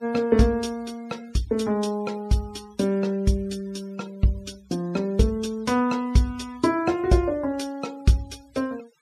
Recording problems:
denoising artefacts; signal-to-artefact ratio 25 dB

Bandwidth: 14.5 kHz